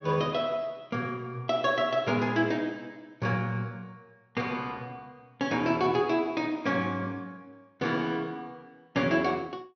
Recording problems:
low-pass filter; nothing above 6.3 kHz

